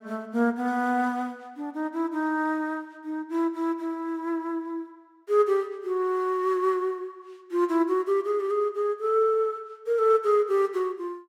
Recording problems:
none

